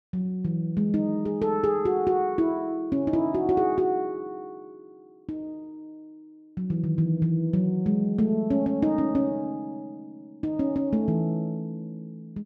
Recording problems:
none

